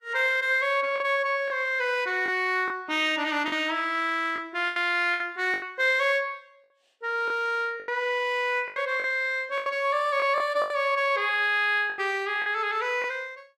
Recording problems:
lossy codec; Vorbis, log-spectral distance 2 dB, nothing above 14.7 kHz
lost packets; 7% of the sound replaced, filled with the last packet

